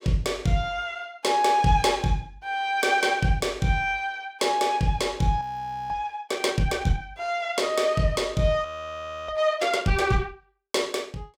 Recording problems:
frozen audio; at 5.5 s and at 8.5 s for 0.5 s

